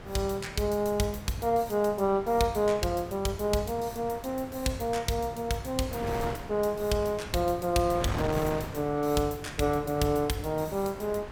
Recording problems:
wind noise; below 1.1 kHz, SNR 12 dB

